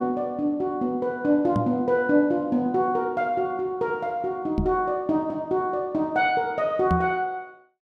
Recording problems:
microphone bump; at 1.5 s, at 4.5 s and at 7 s; peak +3 dB vs average level

